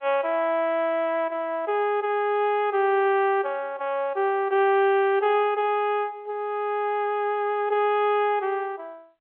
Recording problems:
telephone audio; 340 Hz to 3.5 kHz, G.711

